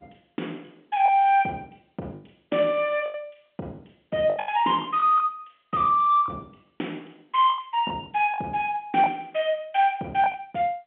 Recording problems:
phone line; 170 Hz to 3.5 kHz, G.711
packet loss; 8% of the sound replaced, filled with the last packet

